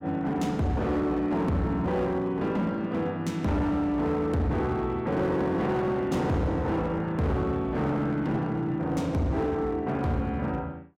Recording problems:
distorted audio; hard clipping, signal-to-distortion ratio 11 dB

